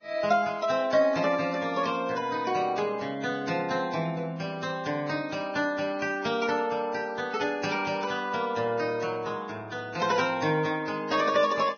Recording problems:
codec artefacts; Vorbis, log-spectral distance 3 dB, nothing above 6.3 kHz

